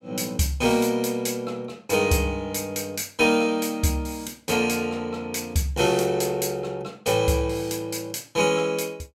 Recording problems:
none

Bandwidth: 16.5 kHz